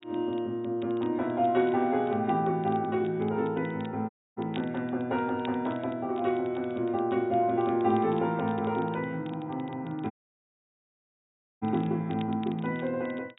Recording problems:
low-pass filter; nothing above 4 kHz
crackle; vinyl, SNR 25 dB
audio cutting out; at 4 s and at 10 s for 1.5 s

